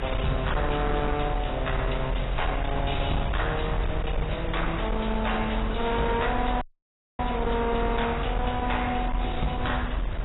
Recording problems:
codec artefacts; AAC, log-spectral distance 6 dB, nothing above 3.8 kHz
distortion; hard clipping, signal-to-distortion ratio 10 dB
background hiss; SNR 8 dB
rumble; below 78 Hz, strongest tone 42 Hz, SNR 3 dB
audio cutting out; at 6.5 s for 0.5 s

